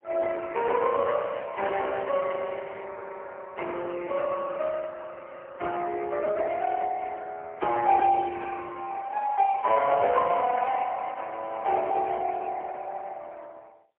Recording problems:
telephone audio; 370 Hz to 3.2 kHz, AMR-NB, then MP3
crackle; from 1 to 3 s; loose cable, SNR 27 dB

